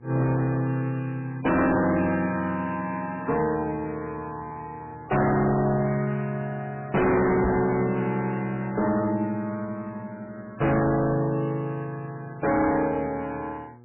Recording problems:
codec artefacts; MP3, log-spectral distance 3 dB, nothing above 2.4 kHz
distortion; hard clipping, signal-to-distortion ratio 6 dB
hum; 60 Hz, harmonics up to 1.3 kHz, SNR 24 dB
knock on the microphone; at 7.5 s; peak +5 dB vs average level

